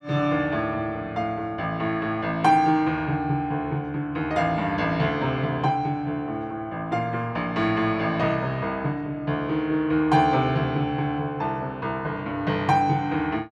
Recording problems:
none

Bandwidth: 13.5 kHz